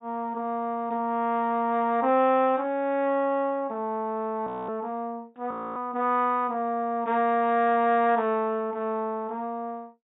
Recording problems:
treble missing; nothing above 4 kHz
audio freezing; at 4.5 s and at 5.5 s

